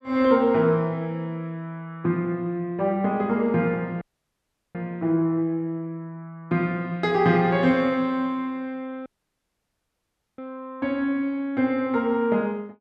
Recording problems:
dropout; at 4 s for 0.5 s and at 9 s for 1.5 s

